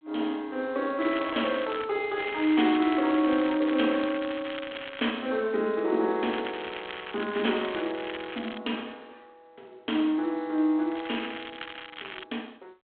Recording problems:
phone line; 240 Hz to 3.4 kHz, G.726
crackle; 4 times, first at 1 s; loose cable, SNR 12 dB

